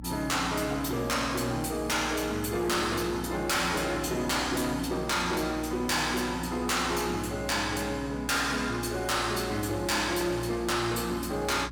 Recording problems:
distorted audio; hard clipping, uneven, signal-to-distortion ratio 7 dB
hum; 60 Hz, harmonics up to 300 Hz, SNR 14 dB

